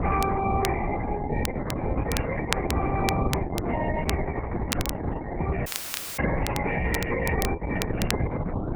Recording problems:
lossy compression; MP3, then Opus, log-spectral distance 4 dB
electrical hum; 60 Hz, harmonics up to 720 Hz, SNR 11 dB
wind on the microphone; below 500 Hz, SNR 0 dB
crackling; vinyl, SNR 5 dB
dropout; at 5.5 s for 0.5 s

